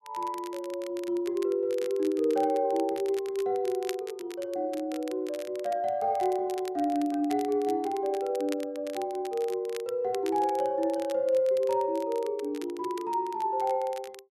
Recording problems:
crackle; vinyl, SNR 19 dB

